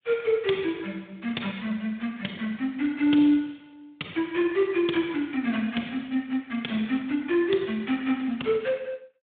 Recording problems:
telephone audio; 150 Hz to 3.7 kHz, Speex

